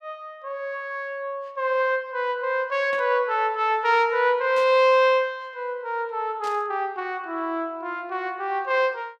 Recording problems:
static burst; at 3 s, at 4.5 s and at 6.5 s; peak -13 dB vs average level

